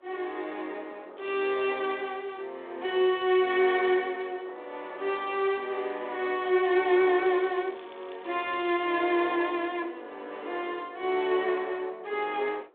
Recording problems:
telephone audio; 300 Hz to 3.9 kHz, G.726
wind noise; below 1.1 kHz, SNR 25 dB
crackling; at 1 s and from 7 to 9.5 s; loose cable, SNR 27 dB

